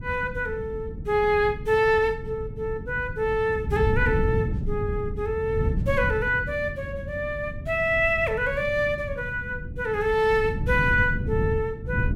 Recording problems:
wind on the microphone; below 150 Hz, SNR 7 dB

